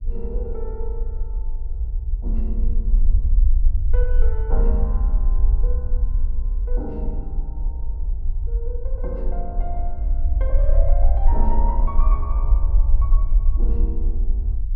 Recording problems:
low-frequency rumble; below 50 Hz, strongest tone 22 Hz, SNR -11 dB

